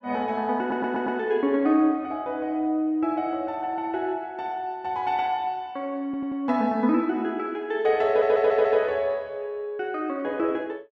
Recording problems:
stutter; at 0.5 s, at 6 s and at 8 s

